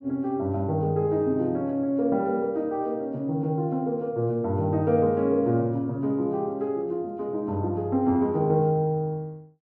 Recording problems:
none

